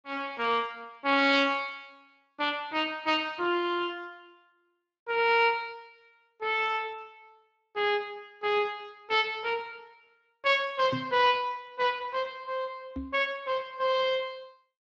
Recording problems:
lossy compression; Speex, log-spectral distance 4 dB
microphone thump; at 11 s and at 13 s; peak -2 dB vs average level

